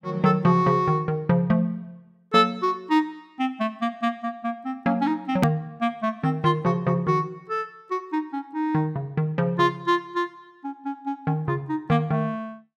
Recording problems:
hard cut with a click; at 5.5 s

